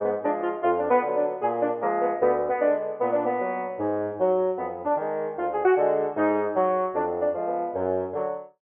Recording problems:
treble missing; nothing above 3.4 kHz

